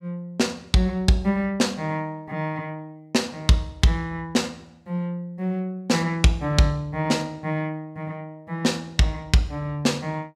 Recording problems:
none

